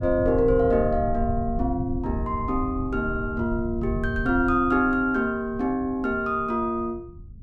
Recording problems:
rumble; below 110 Hz, SNR 9 dB

